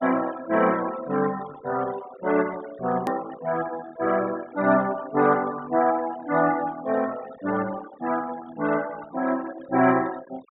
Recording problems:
treble cut off; nothing above 4 kHz
noise reduction artefacts; signal-to-artefact ratio 17 dB
click at an edit; at 3 s

